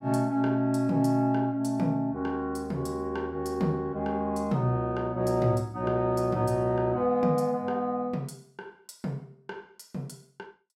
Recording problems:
none

